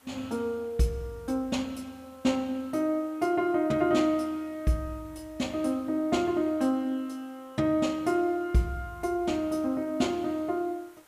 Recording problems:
hiss; SNR 29 dB

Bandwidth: 15 kHz